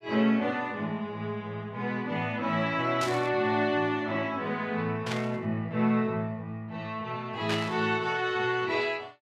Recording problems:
burst of static; at 3 s, at 5 s and at 7.5 s; peak 0 dB vs average level

